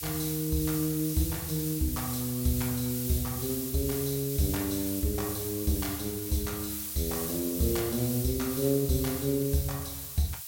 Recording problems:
background hiss; slope +5 dB per octave, SNR 4 dB

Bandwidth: 16.5 kHz